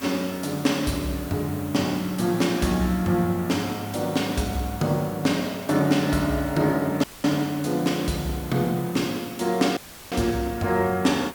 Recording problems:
hiss; SNR 16 dB
audio cutting out; at 7 s and at 10 s; filled with static

